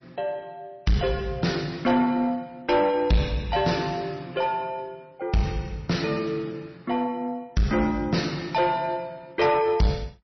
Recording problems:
codec artefacts; MP3, log-spectral distance 3 dB, nothing above 5.8 kHz
distorted audio; soft clipping, signal-to-distortion ratio 9 dB

